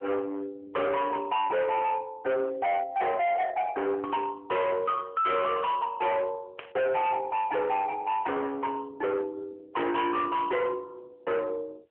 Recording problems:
phone line; 300 Hz to 3.7 kHz, AMR-NB
distortion; hard clipping, uneven, signal-to-distortion ratio 5 dB
static burst; at 6.5 s and at 10 s; peak -8 dB vs average level

